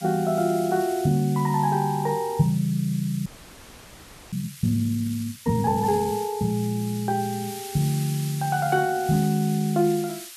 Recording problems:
hiss; slope +5 dB per octave, SNR 15 dB
audio freezing; at 3.5 s for 1 s

